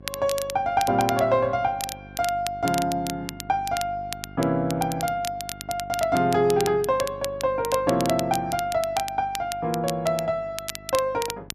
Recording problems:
electrical hum; 50 Hz, harmonics up to 800 Hz, SNR 19 dB
crackle; vinyl, SNR 11 dB

